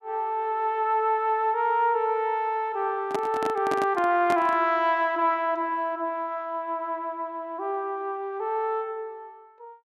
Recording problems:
microphone handling noise; from 3 to 4.5 s; peak -2 dB vs average level

